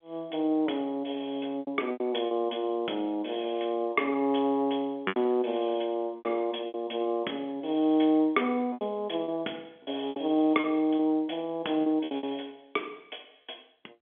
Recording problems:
phone line; 220 Hz to 3.5 kHz, G.711
packet loss; 7% of the sound replaced, filled with repeated pitch periods

